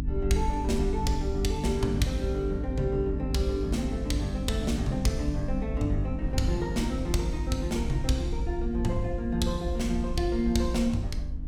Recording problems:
hum; 50 Hz, harmonics up to 300 Hz, SNR 6 dB
rumble; below 64 Hz, SNR 6 dB
wind noise; below 130 Hz, SNR 17 dB

